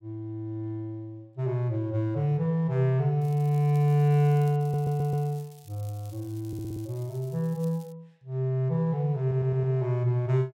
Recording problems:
crackling; from 3 to 4.5 s and from 4.5 to 8 s; loose cable, SNR 27 dB
stutter; at 4.5 s, at 6.5 s and at 9 s

